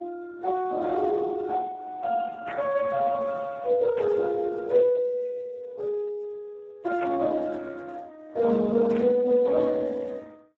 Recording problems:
lossy codec; MP3, then Speex, log-spectral distance 3 dB
static burst; 4 times, first at 2.5 s; peak -7 dB vs average level

